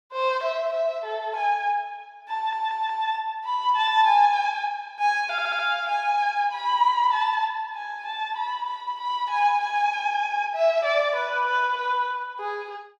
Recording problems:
audio stuttering; at 2.5 s and at 5.5 s

